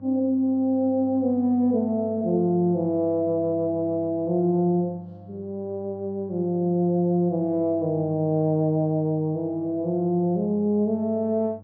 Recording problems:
electrical hum; 50 Hz, harmonics up to 800 Hz, SNR 21 dB

